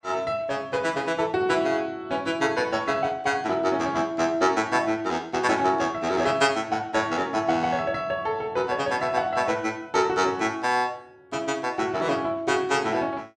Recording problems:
none

